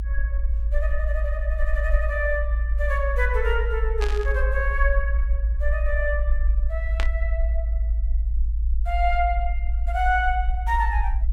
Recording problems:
rumble; below 56 Hz, strongest tone 54 Hz, SNR -2 dB
static burst; at 4 s and at 7 s; peak +1 dB vs average level

